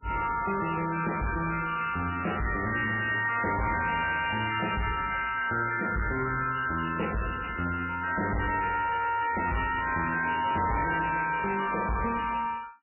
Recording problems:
lossy compression; MP3, log-spectral distance 12 dB, nothing above 2.8 kHz
distortion; hard clipping, uneven, signal-to-distortion ratio 7 dB

